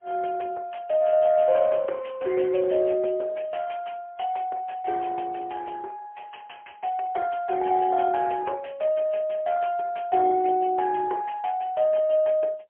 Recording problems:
phone line; 320 Hz to 3.2 kHz, AMR-NB, then MP3

